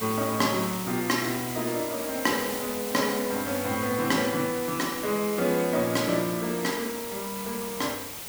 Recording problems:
background hiss; slope -1 dB per octave, SNR 7 dB

